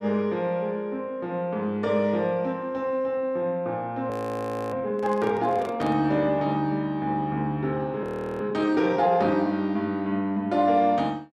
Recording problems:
frozen audio; at 4 s for 0.5 s and at 8 s
handling noise; from 5 to 6 s; peak -7 dB vs average level

